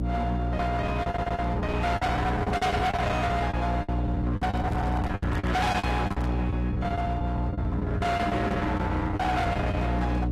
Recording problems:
lossy compression; AAC, log-spectral distance 2 dB, nothing above 13.5 kHz
distortion; hard clipping, uneven, signal-to-distortion ratio 7 dB
hum; 60 Hz, harmonics up to 720 Hz, SNR 1 dB
lost packets; 15% of the sound replaced, filled with the last packet
audio stuttering; at 1 s
microphone handling noise; from 4.5 to 6.5 s; peak -7 dB vs average level

